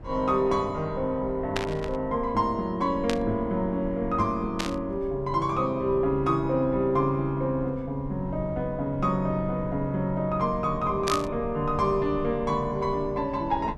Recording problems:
low-frequency rumble; below 140 Hz, SNR 15 dB
static burst; 4 times, first at 1.5 s; peak +2 dB vs average level

